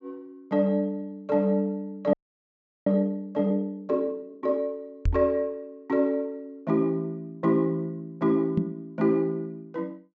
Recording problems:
low-pass filter; nothing above 8 kHz
audio freezing; at 2 s for 0.5 s
microphone bump; at 5 s and at 8.5 s; peak +5 dB vs average level

